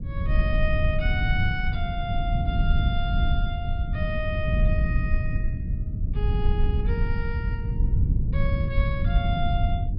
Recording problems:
treble missing; nothing above 5.5 kHz
low-frequency rumble; below 100 Hz, SNR -6 dB

